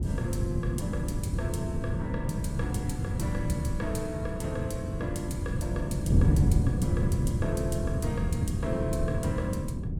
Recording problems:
wind noise; below 180 Hz, SNR -6 dB

